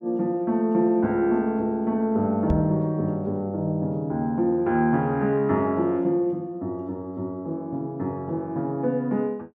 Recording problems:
microphone thump; at 2.5 s; peak +2 dB vs average level

